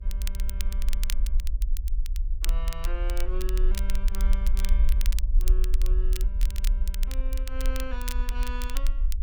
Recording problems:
hum; 60 Hz, harmonics up to 660 Hz, SNR 20 dB
rumble; below 46 Hz, SNR -13 dB
crackle; vinyl, SNR 0 dB

